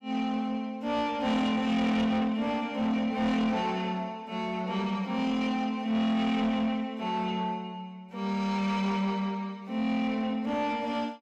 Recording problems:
distortion; soft clipping, signal-to-distortion ratio 11 dB

